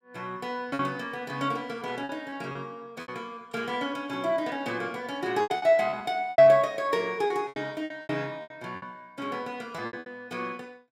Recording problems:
packet loss; 10% of the sound replaced, filled with repeated pitch periods

